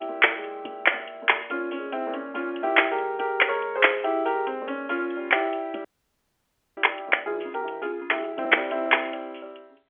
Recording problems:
telephone audio; 280 Hz to 3.4 kHz, G.711
frozen audio; at 6 s for 1 s

